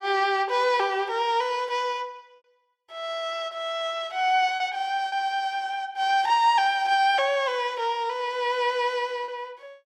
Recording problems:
lost packets; 1.3% of the sound replaced, filled with repeated pitch periods

